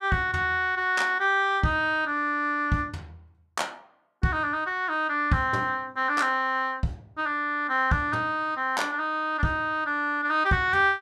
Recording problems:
none

